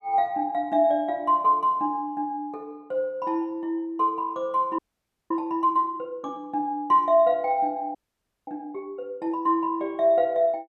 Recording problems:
frozen audio; at 5 s for 0.5 s and at 8 s for 0.5 s

